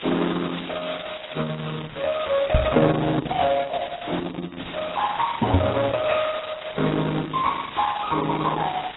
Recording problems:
lossy compression; Opus, then AAC, log-spectral distance 16 dB, nothing above 3.8 kHz
hiss; SNR 11 dB
microphone bump; at 2.5 s and at 5.5 s; peak +8 dB vs average level

